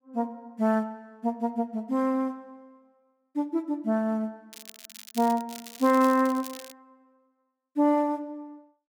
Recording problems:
crackling; from 4.5 to 6.5 s; loose cable, SNR 16 dB

